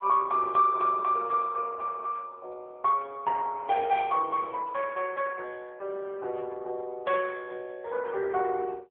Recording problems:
telephone audio; 340 Hz to 2.8 kHz, AMR-NB

